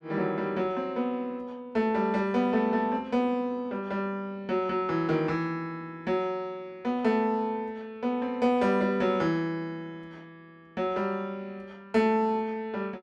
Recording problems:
none

